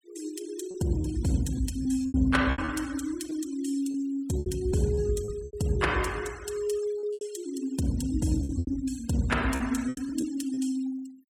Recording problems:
noise reduction artefacts; signal-to-artefact ratio 18 dB
packet loss; 9% of the sound replaced, filled with repeated pitch periods

